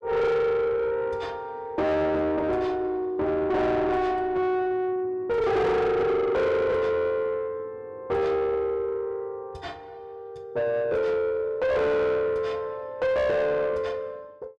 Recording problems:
distorted audio; soft clipping, signal-to-distortion ratio 7 dB

